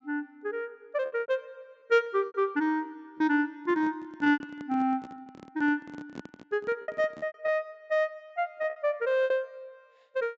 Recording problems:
treble missing; nothing above 7.7 kHz
lost packets; 10% of the sound replaced, filled with repeated pitch periods
microphone handling noise; from 3.5 to 7.5 s; peak -6 dB vs average level

